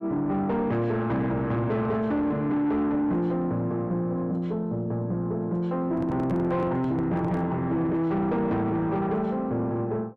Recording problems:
distortion; soft clipping, signal-to-distortion ratio 10 dB
microphone handling noise; from 6 to 7.5 s; peak 0 dB vs average level

